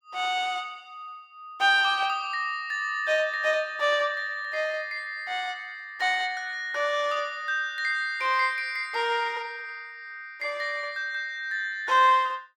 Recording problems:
none

